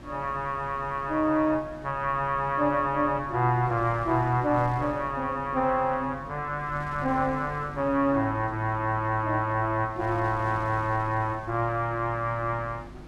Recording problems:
hum; 50 Hz, harmonics up to 350 Hz, SNR 20 dB
wind noise; below 650 Hz, SNR 20 dB

